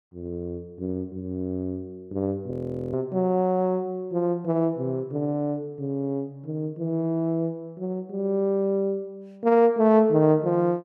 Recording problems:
audio freezing; at 2.5 s

